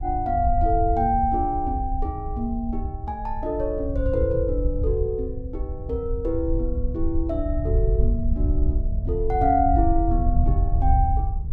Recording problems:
wind noise; below 76 Hz, SNR 1 dB

